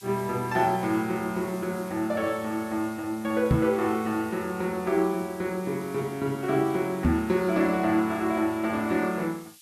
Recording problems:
hiss; SNR 21 dB
microphone thump; at 3.5 s and at 7 s; peak +7 dB vs average level

